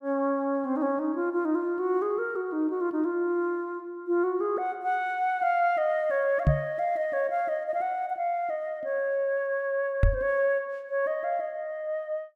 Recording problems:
microphone bump; at 6.5 s and at 10 s; peak +9 dB vs average level

